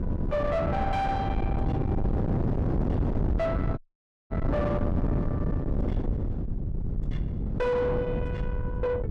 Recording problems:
distortion; soft clipping, signal-to-distortion ratio 6 dB
hum; 50 Hz, harmonics up to 400 Hz, SNR 13 dB
low-frequency rumble; below 150 Hz, SNR 2 dB
wind on the microphone; below 300 Hz, SNR 0 dB
dropout; at 4 s for 0.5 s

